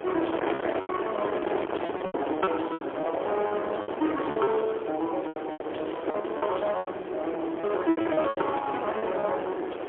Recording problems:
phone line; 280 Hz to 3.4 kHz, AMR-NB, then MP3
distortion; soft clipping, signal-to-distortion ratio 12 dB
wind noise; below 810 Hz, SNR 4 dB
packet loss; 13% of the sound replaced, filled with repeated pitch periods

